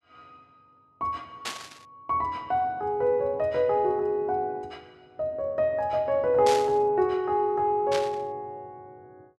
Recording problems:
burst of static; at 1.5 s, at 6.5 s and at 8 s; peak -2 dB vs average level

